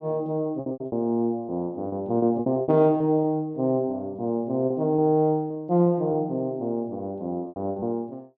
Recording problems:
lost packets; 10% of the sound replaced, filled with repeated pitch periods

